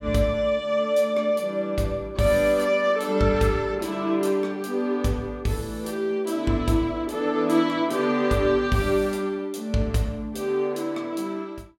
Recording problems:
none

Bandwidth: 16.5 kHz